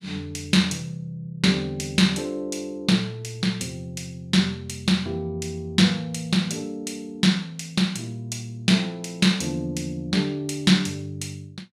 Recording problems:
none

